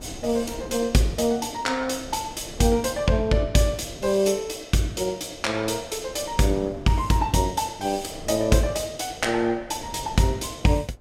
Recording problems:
wind noise; below 370 Hz, SNR 20 dB

